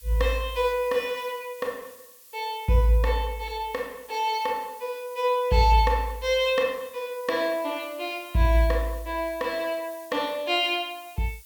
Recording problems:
background hiss; SNR 22 dB

